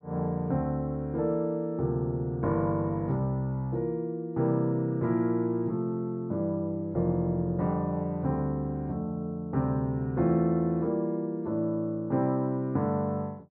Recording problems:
treble cut off; nothing above 5.5 kHz

